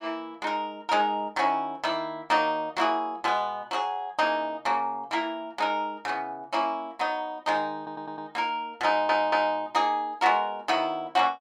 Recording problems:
audio stuttering; at 8 s and at 9 s

